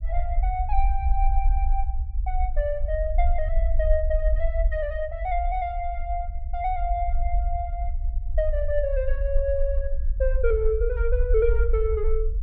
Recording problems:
rumble; below 54 Hz, SNR -1 dB

